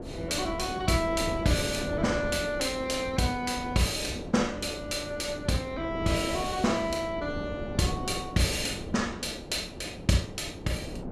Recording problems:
wind on the microphone; below 430 Hz, SNR 9 dB

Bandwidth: 14 kHz